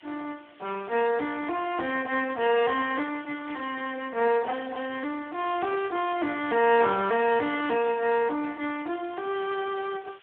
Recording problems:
phone line; 300 Hz to 3.5 kHz, Speex
hiss; SNR 27 dB
burst of static; at 3.5 s and at 8.5 s; peak -13 dB vs average level

